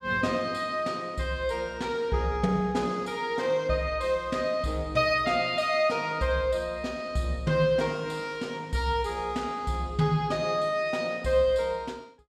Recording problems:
none

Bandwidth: 14.5 kHz